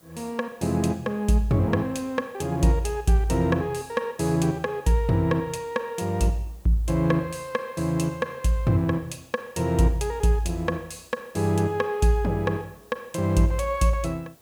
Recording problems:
hiss; SNR 30 dB

